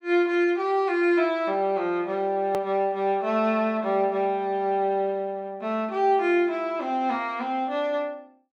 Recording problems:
edit click; at 2.5 s

